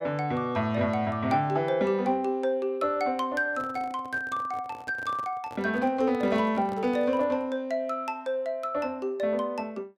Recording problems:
microphone handling noise; from 3.5 to 7.5 s; peak -10 dB vs average level

